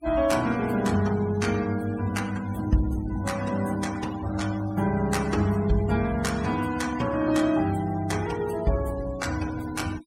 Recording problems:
noise reduction artefacts; signal-to-artefact ratio 17 dB

